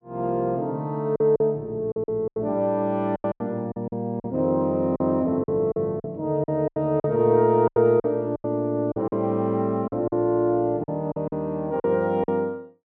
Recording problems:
packet loss; 11% of the sound replaced, filled with silence

